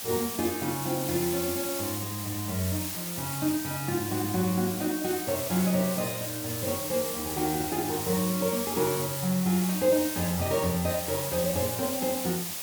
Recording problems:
background hiss; SNR 3 dB

